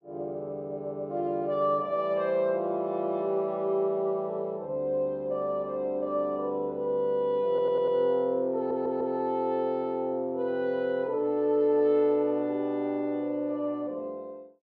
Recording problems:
stutter; at 7.5 s and at 8.5 s

